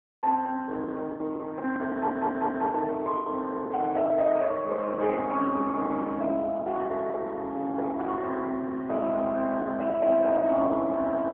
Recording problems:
telephone audio; 240 Hz to 2.6 kHz, AMR-NB
lost packets; 13% of the sound replaced, filled with the last packet
audio stuttering; at 2 s

